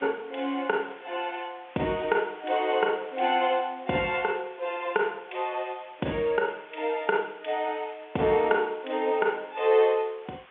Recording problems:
telephone audio; 240 Hz to 3.4 kHz, G.711
hiss; SNR 24 dB

